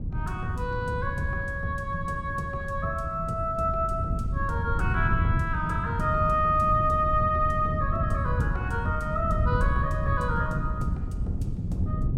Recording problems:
wind noise; below 140 Hz, SNR 3 dB

